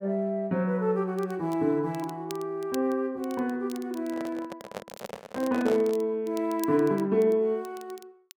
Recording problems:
crackling; vinyl, SNR 22 dB
microphone handling noise; from 4 to 6 s; peak -3 dB vs average level

